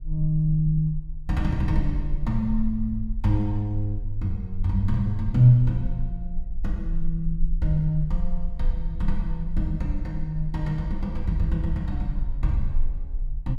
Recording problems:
low-frequency rumble; below 36 Hz, strongest tone 18 Hz, SNR 8 dB

